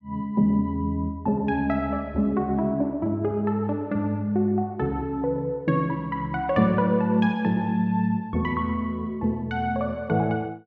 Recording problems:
none

